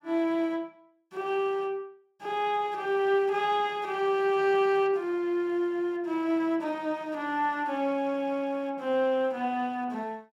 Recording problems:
none

